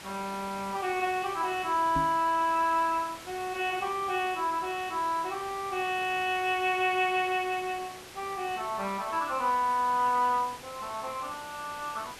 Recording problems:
background hiss; slope -2 dB per octave, SNR 15 dB
microphone thump; at 2 s; peak -2 dB vs average level

